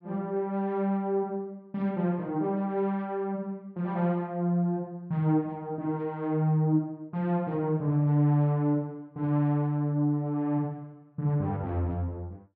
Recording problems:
none

